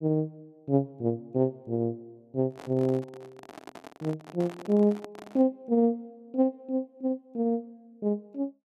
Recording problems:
microphone handling noise; from 2.5 to 5.5 s; peak -9 dB vs average level

